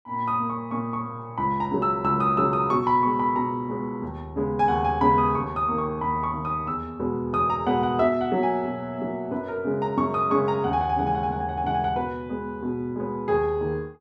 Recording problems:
none

